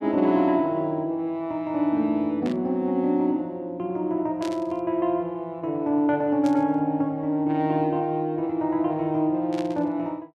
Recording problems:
static burst; 4 times, first at 2.5 s; peak -10 dB vs average level

